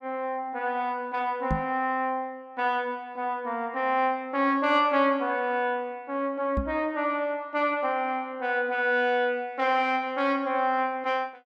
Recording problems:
microphone thump; at 1.5 s and at 6.5 s; peak +2 dB vs average level

